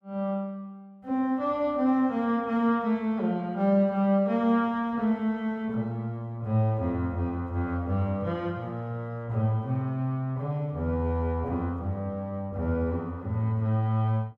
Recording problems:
none

